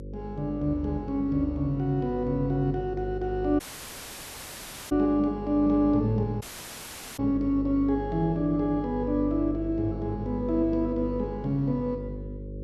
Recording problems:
mains hum; 50 Hz, harmonics up to 550 Hz, SNR 10 dB
audio cutting out; at 3.5 s for 1.5 s and at 6.5 s for 1 s

